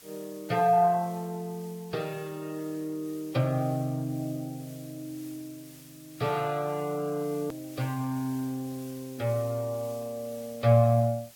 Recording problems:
lossy compression; Vorbis, log-spectral distance 2 dB
background hiss; slope +1 dB per octave, SNR 21 dB
edit click; at 7.5 s

